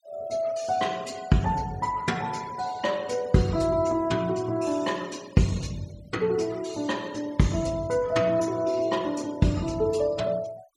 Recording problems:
noise reduction artefacts; signal-to-artefact ratio 22 dB

